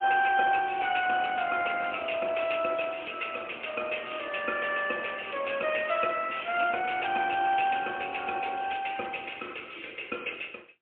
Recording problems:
phone line; 170 Hz to 3.3 kHz, AMR-NB, then MP3

